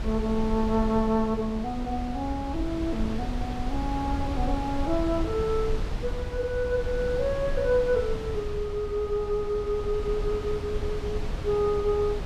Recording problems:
wind noise; below 120 Hz, SNR 6 dB

